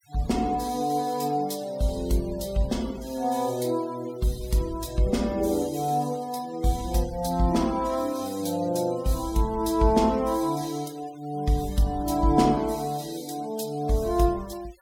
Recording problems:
noise reduction artefacts; signal-to-artefact ratio 21 dB

